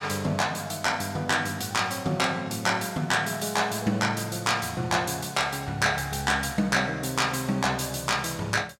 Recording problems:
none

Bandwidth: 16.5 kHz